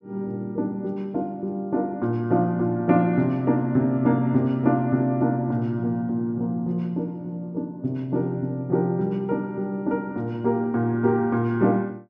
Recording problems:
none

